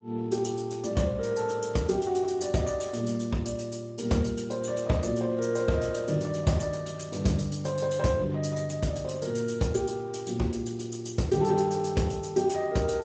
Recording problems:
codec artefacts; Speex, log-spectral distance 6 dB, nothing above 7.6 kHz

